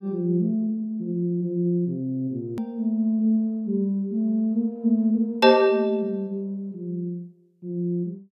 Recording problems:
edit click; at 2.5 s

